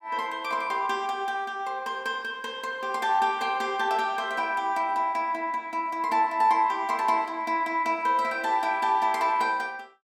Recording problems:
none

